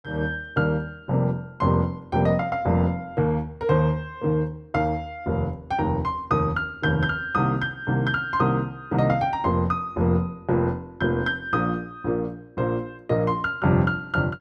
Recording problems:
none

